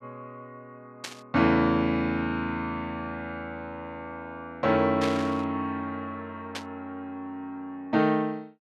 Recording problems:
static burst; at 1 s, at 5 s and at 6.5 s; peak 0 dB vs average level

